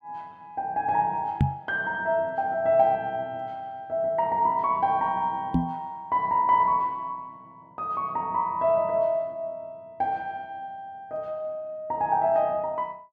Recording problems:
microphone bump; at 1.5 s and at 5.5 s; peak +7 dB vs average level

